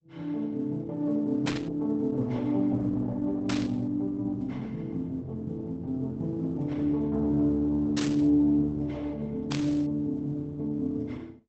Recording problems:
lossy compression; Opus, log-spectral distance 2 dB
burst of static; 4 times, first at 1.5 s; peak -1 dB vs average level

